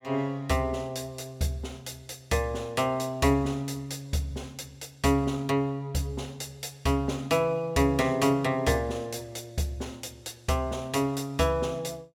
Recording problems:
none

